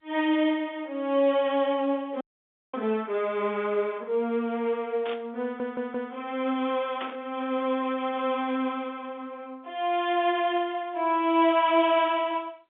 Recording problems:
telephone audio; 220 Hz to 3.6 kHz, G.711
audio cutting out; at 2 s for 0.5 s
burst of static; at 2.5 s, at 5 s and at 7 s; peak -6 dB vs average level
stutter; at 5.5 s

